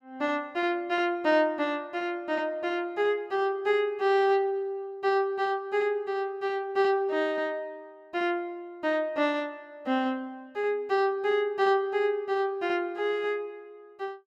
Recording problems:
none

